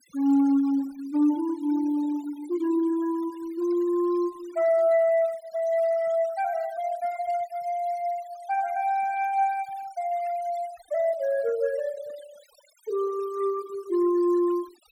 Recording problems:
noise reduction artefacts; signal-to-artefact ratio 23 dB

